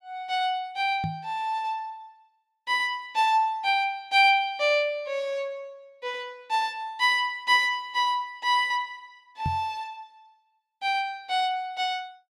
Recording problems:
microphone bump; at 1 s and at 9.5 s; peak -1 dB vs average level

